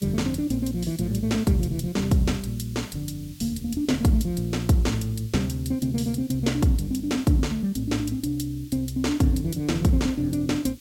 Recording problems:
hiss; slope +5 dB per octave, SNR 23 dB

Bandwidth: 16.5 kHz